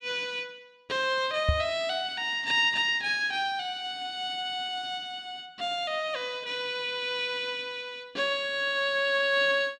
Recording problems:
knock on the microphone; at 1.5 s; peak +6 dB vs average level

